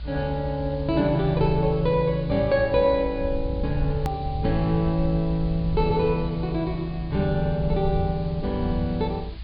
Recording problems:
low-pass filter; nothing above 4.8 kHz
background hiss; SNR 25 dB
low-frequency rumble; below 84 Hz, SNR 9 dB
click at an edit; at 4 s

